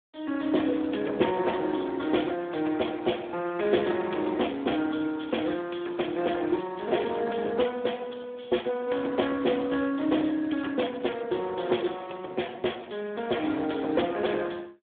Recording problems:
phone line; 240 Hz to 3.5 kHz, Speex

